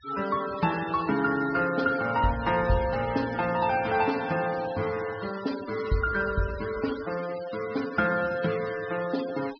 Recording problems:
treble missing; nothing above 5.5 kHz
denoising artefacts; signal-to-artefact ratio 14 dB

